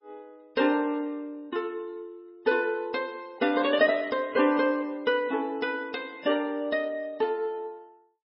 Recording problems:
codec artefacts; MP3, log-spectral distance 2 dB, nothing above 5.2 kHz

